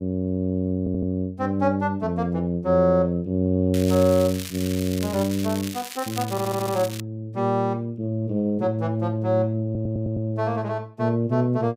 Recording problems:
audio stuttering; at 1 s, at 6.5 s and at 9.5 s
crackle; from 3.5 to 7 s; loose cable, SNR 12 dB

